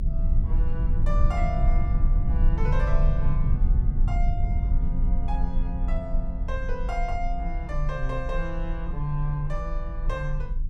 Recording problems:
rumble; below 54 Hz, strongest tone 26 Hz, SNR -6 dB

